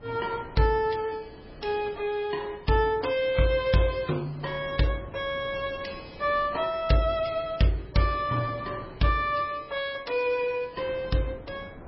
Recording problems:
codec artefacts; MP3, log-spectral distance 3 dB, nothing above 5.5 kHz
wind noise; below 590 Hz, SNR 20 dB

